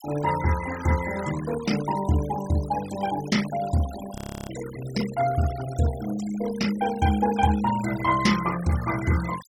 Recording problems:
denoising artefacts; signal-to-artefact ratio 13 dB
frozen audio; at 4 s

